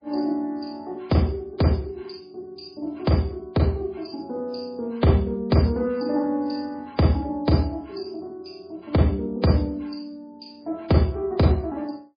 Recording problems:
lossy codec; MP3, log-spectral distance 4 dB, nothing above 4.8 kHz

